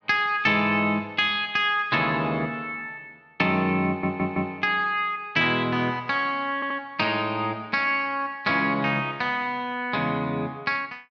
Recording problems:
audio stuttering; at 4 s and at 6.5 s

